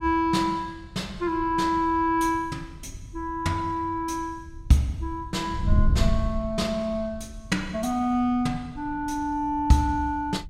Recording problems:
wind on the microphone; below 94 Hz, SNR 8 dB

